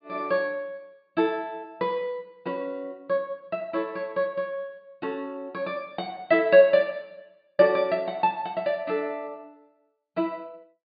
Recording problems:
low-pass filter; nothing above 4.9 kHz

